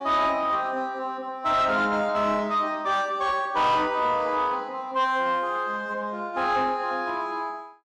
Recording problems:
distortion; soft clipping, signal-to-distortion ratio 11 dB

